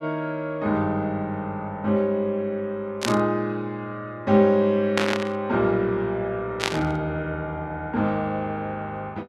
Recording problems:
burst of static; at 3 s, at 5 s and at 6.5 s; peak +4 dB vs average level

